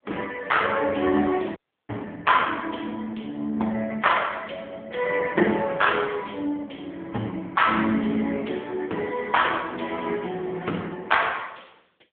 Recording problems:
telephone audio; 150 Hz to 3.5 kHz, AMR-NB
audio cutting out; at 1.5 s

